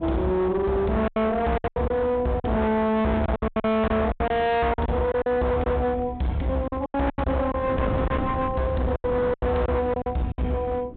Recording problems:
treble cut off; nothing above 4 kHz
distortion; hard clipping, uneven, signal-to-distortion ratio 6 dB
wind noise; below 360 Hz, SNR 14 dB
lost packets; 12% of the sound replaced, filled with silence

